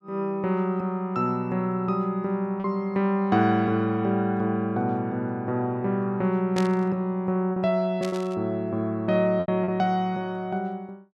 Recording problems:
packet loss; 2% of the sound replaced, filled with repeated pitch periods
burst of static; at 6.5 s and at 8 s; peak -4 dB vs average level

